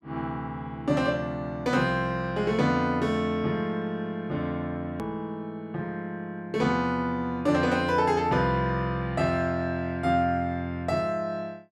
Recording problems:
edit click; at 5 s

